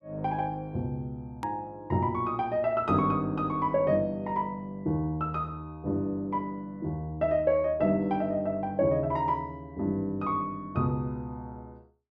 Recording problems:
click at an edit; at 1.5 s

